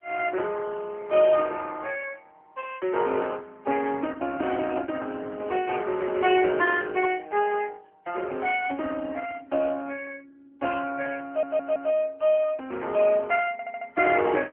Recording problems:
phone line; 240 Hz to 3.1 kHz, AMR-NB
stutter; at 11 s and at 14 s

